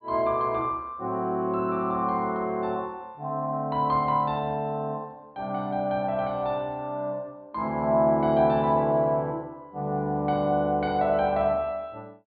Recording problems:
treble missing; nothing above 4.6 kHz

